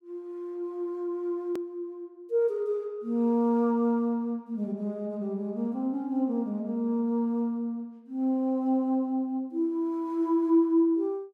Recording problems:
click at an edit; at 1.5 s

